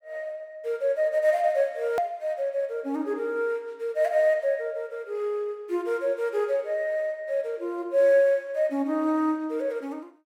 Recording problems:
hard cut with a click; at 2 s

